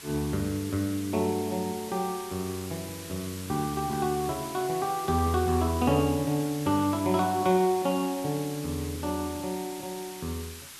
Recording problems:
background hiss; SNR 12 dB

